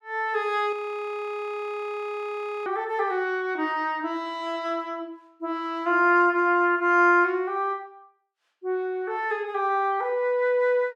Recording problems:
frozen audio; at 0.5 s for 2 s

